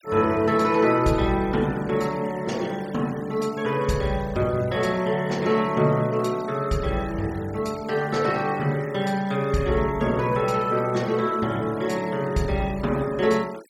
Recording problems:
denoising artefacts; signal-to-artefact ratio 21 dB

